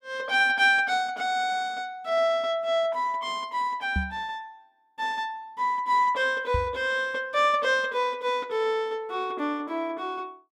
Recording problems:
knock on the microphone; at 4 s and at 6.5 s; peak +1 dB vs average level

